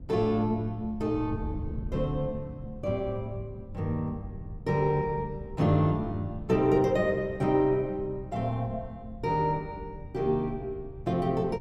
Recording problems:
wind on the microphone; below 120 Hz, SNR 14 dB

